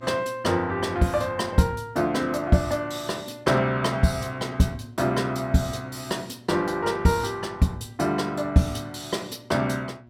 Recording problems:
mains hum; 60 Hz, harmonics up to 1.3 kHz, SNR 24 dB

